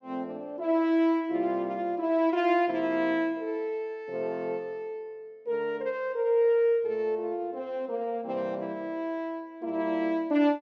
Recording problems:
none

